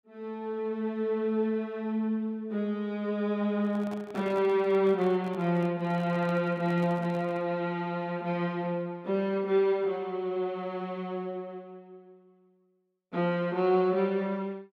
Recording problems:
handling noise; from 3.5 to 7.5 s; peak -11 dB vs average level

